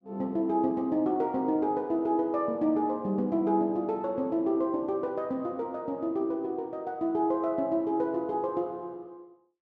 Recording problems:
none

